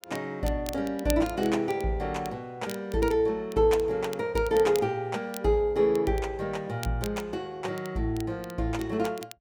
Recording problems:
crackling; vinyl, SNR 18 dB

